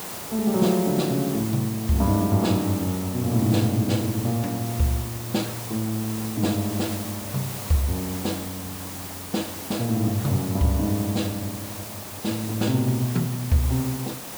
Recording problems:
hiss; slope -3 dB per octave, SNR 9 dB

